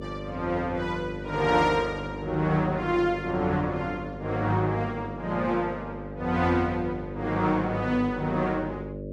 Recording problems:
electrical hum; 50 Hz, harmonics up to 600 Hz, SNR 10 dB

